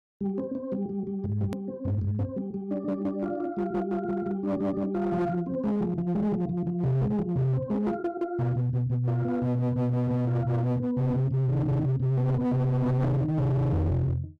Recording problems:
distorted audio; hard clipping, signal-to-distortion ratio 8 dB
click at an edit; at 1.5 s

